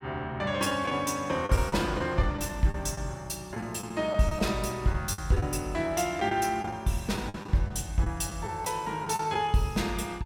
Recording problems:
lost packets; 6% of the sound replaced, filled with the last packet

